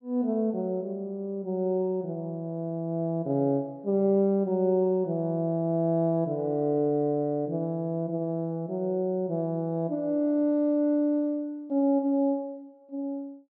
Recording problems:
none

